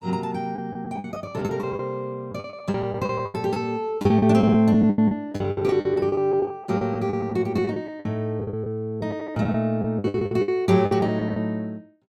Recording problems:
packet loss; 16% of the sound replaced, filled with the last packet

